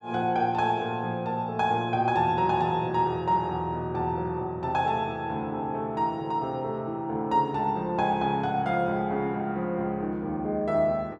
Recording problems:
none

